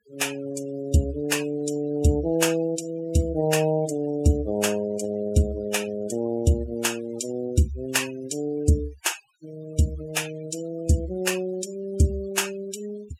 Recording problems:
denoising artefacts; signal-to-artefact ratio 17 dB

